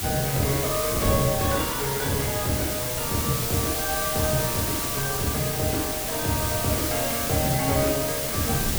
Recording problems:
hum; 60 Hz, harmonics up to 720 Hz, SNR 28 dB
background hiss; slope +1 dB per octave, SNR 0 dB
wind noise; below 290 Hz, SNR 10 dB

